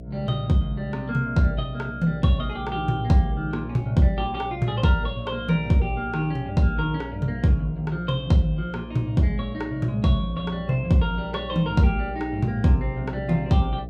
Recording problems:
electrical hum; 60 Hz, harmonics up to 720 Hz, SNR 14 dB

